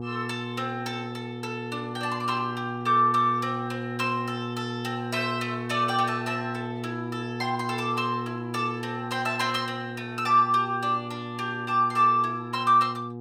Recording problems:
hum; 60 Hz, harmonics up to 840 Hz, SNR 8 dB

